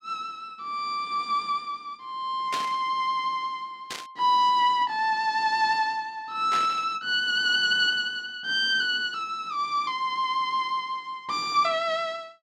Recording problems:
burst of static; at 2.5 s, at 4 s and at 6.5 s; peak -3 dB vs average level

